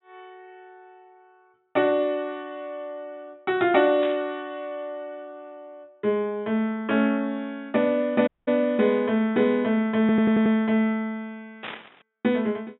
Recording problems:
low-pass filter; nothing above 3.7 kHz
static burst; at 4 s and at 12 s; peak -7 dB vs average level
dropout; at 8.5 s
stutter; at 10 s

